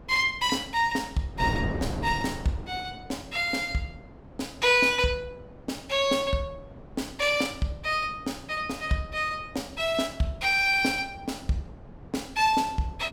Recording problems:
wind on the microphone; below 420 Hz, SNR 14 dB

